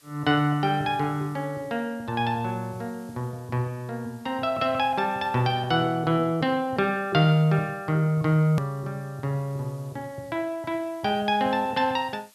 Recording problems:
background hiss; slope +1 dB per octave, SNR 29 dB
hard cut with a click; at 8.5 s

